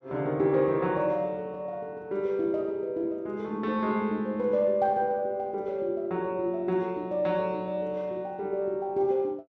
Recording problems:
none

